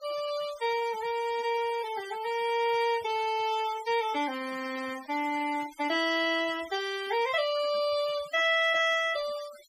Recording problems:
denoising artefacts; signal-to-artefact ratio 17 dB

